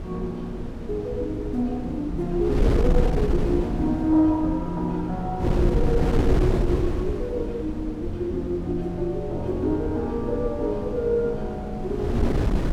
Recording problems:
wind on the microphone; below 240 Hz, SNR 2 dB

